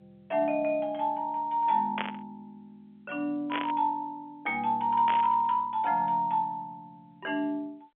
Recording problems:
phone line; 320 Hz to 3.4 kHz, G.711
static burst; at 2 s, at 3.5 s and at 5 s; peak 0 dB vs average level

